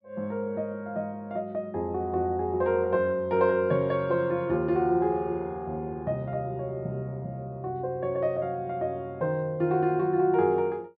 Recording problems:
treble missing; nothing above 5.5 kHz

